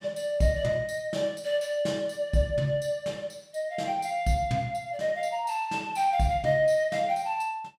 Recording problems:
none

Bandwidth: 16 kHz